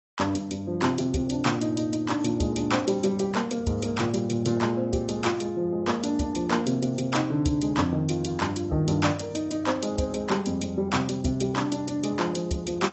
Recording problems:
lossy compression; AAC, log-spectral distance 3 dB, nothing above 7.8 kHz

